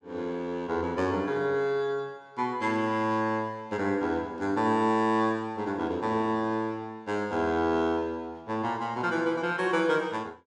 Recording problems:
none

